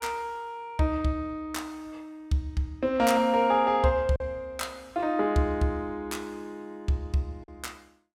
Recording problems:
packet loss; 1% of the sound replaced, filled with silence

